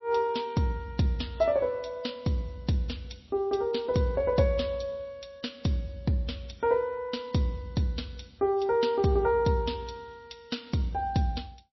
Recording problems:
lossy codec; MP3, log-spectral distance 3 dB, nothing above 5.7 kHz

